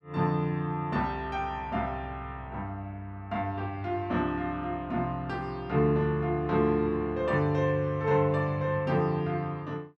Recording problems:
none

